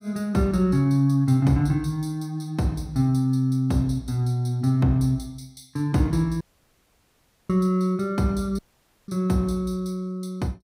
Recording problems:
dropout; at 6.5 s for 1 s and at 8.5 s

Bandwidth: 15.5 kHz